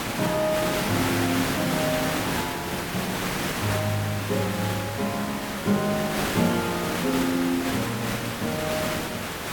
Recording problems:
background hiss; slope -4 dB per octave, SNR 1 dB

